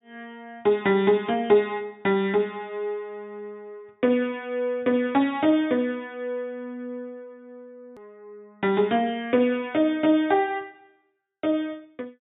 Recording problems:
low-pass filter; nothing above 4 kHz
hard cut with a click; at 8 s

